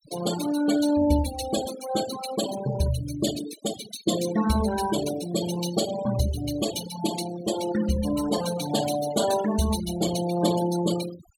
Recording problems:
denoising artefacts; signal-to-artefact ratio 9 dB

